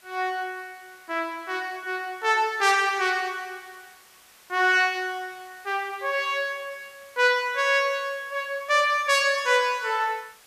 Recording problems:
background hiss; slope 0 dB per octave, SNR 27 dB

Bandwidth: 14.5 kHz